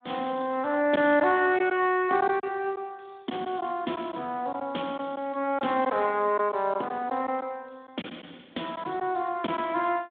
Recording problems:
telephone audio; 220 Hz to 3.6 kHz, Speex
packet loss; 4% of the sound replaced, filled with silence

